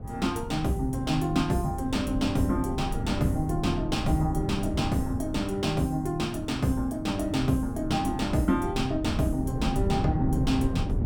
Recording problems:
wind noise; below 190 Hz, SNR 6 dB

